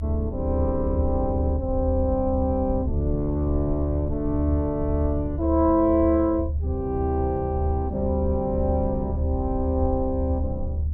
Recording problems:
low-frequency rumble; below 78 Hz, strongest tone 76 Hz, SNR 3 dB

